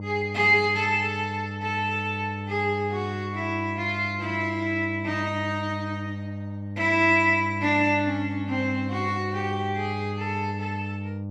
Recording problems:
hum; 50 Hz, harmonics up to 900 Hz, SNR 8 dB

